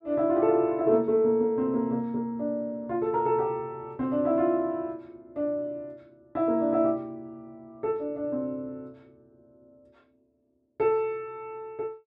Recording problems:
none

